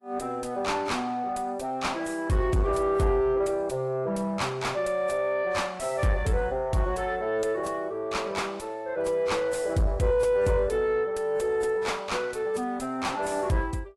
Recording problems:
lossy compression; AAC, log-spectral distance 2 dB, nothing above 11.3 kHz
distortion; soft clipping, signal-to-distortion ratio 10 dB

